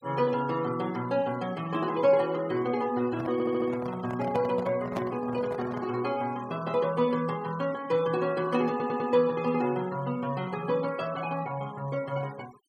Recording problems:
denoising artefacts; signal-to-artefact ratio 21 dB
handling noise; from 3 to 6 s; peak -2 dB vs average level
stutter; at 3.5 s and at 8.5 s

